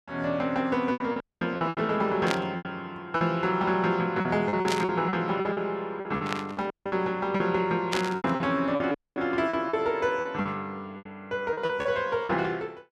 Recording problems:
lost packets; 12% of the sound replaced, filled with repeated pitch periods
audio cutting out; at 1 s, at 6.5 s and at 9 s
static burst; 4 times, first at 2.5 s; peak +2 dB vs average level

